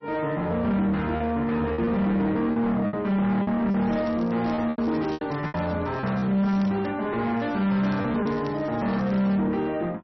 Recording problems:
lossy codec; MP3, log-spectral distance 2 dB, nothing above 4.9 kHz
distorted audio; soft clipping, signal-to-distortion ratio 9 dB
lost packets; 7% of the sound replaced, filled with repeated pitch periods
crackling; from 3.5 to 7 s and from 7.5 to 9.5 s; loose cable, SNR 25 dB

